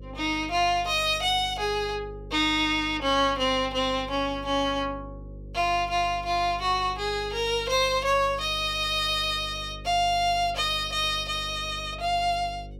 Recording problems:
hum; 50 Hz, harmonics up to 550 Hz, SNR 17 dB

